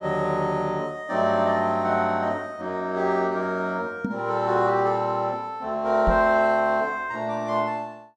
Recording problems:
microphone thump; at 4 s and at 6 s; peak +2 dB vs average level

